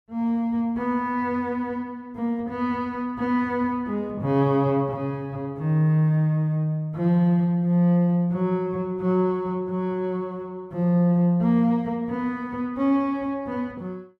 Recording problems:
none

